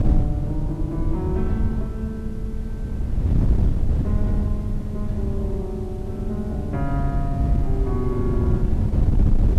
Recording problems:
hum; 50 Hz, harmonics up to 500 Hz, SNR 26 dB
hiss; slope -4 dB per octave, SNR 22 dB
wind noise; below 110 Hz, SNR -5 dB

